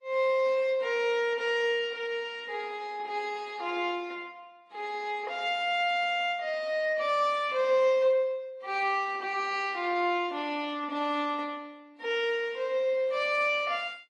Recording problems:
lossy compression; AAC, then AAC, log-spectral distance 2 dB

